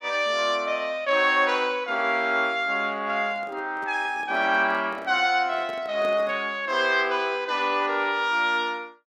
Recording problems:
handling noise; from 3 to 6.5 s; peak -10 dB vs average level

